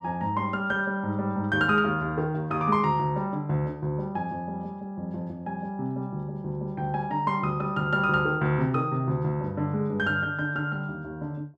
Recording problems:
none

